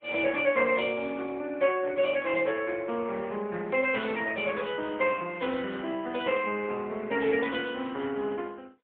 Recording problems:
phone line; 220 Hz to 3.4 kHz, AMR-NB, then MP3

